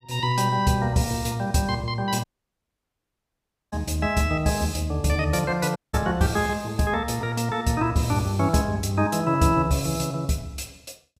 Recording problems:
dropout; at 2 s for 1.5 s and at 6 s

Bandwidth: 15.5 kHz